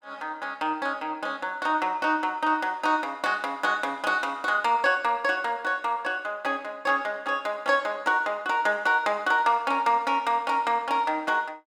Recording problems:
none

